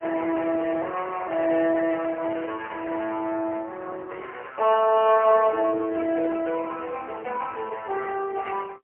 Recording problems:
telephone audio; 280 Hz to 3 kHz, AMR-NB, then MP3

